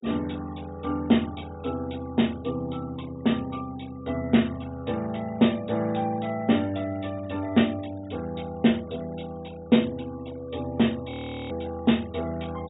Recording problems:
treble missing; nothing above 4 kHz
noise reduction artefacts; signal-to-artefact ratio 24 dB
frozen audio; at 11 s

